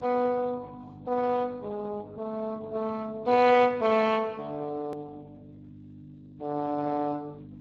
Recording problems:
codec artefacts; Speex, log-spectral distance 3 dB
mains hum; 50 Hz, harmonics up to 450 Hz, SNR 20 dB
hard cut with a click; at 5 s

